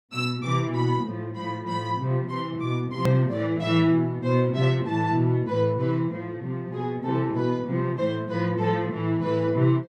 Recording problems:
click at an edit; at 3 s

